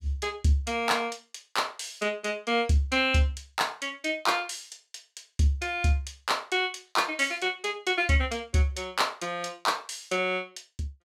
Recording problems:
none

